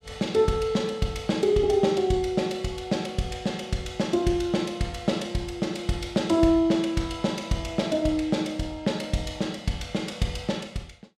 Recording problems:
none

